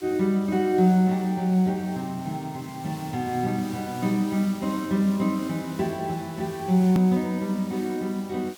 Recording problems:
background hiss; slope 0 dB per octave, SNR 20 dB
click at an edit; at 7 s

